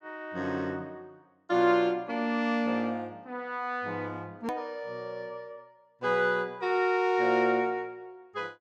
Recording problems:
hard cut with a click; at 4.5 s

